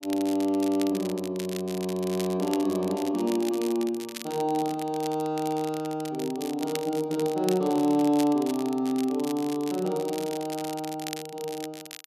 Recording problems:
crackling; vinyl, SNR 14 dB

